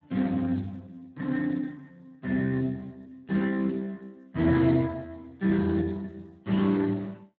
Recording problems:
codec artefacts; Speex, log-spectral distance 3 dB

